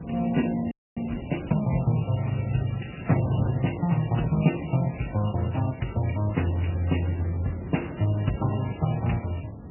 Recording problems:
lossy codec; Speex, then MP3, log-spectral distance 6 dB, nothing above 2.9 kHz
wind noise; below 310 Hz, SNR 11 dB
audio freezing; at 0.5 s
crackling; from 4.5 to 5.5 s and at 8.5 s; loose cable, SNR 27 dB

